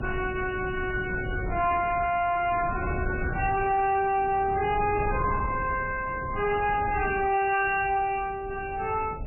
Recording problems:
lossy compression; MP3, log-spectral distance 4 dB, nothing above 2.4 kHz
distortion; soft clipping, signal-to-distortion ratio 11 dB
wind noise; below 280 Hz, SNR 9 dB

